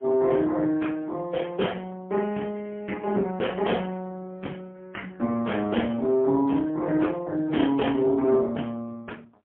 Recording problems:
telephone audio; 190 Hz to 3.2 kHz, AMR-NB, then MP3

